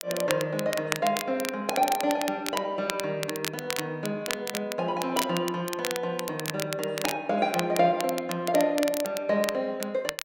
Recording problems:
crackling; vinyl, SNR 7 dB

